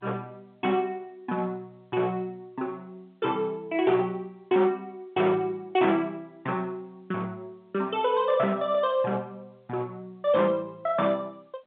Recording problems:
phone line; 220 Hz to 3.6 kHz, G.711
distortion; hard clipping, signal-to-distortion ratio 13 dB

